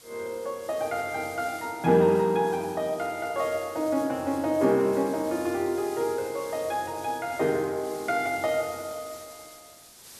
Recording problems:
background hiss; SNR 18 dB

